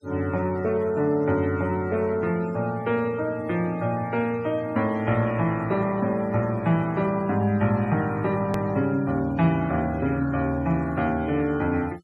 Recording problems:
denoising artefacts; signal-to-artefact ratio 23 dB
hard cut with a click; at 8.5 s

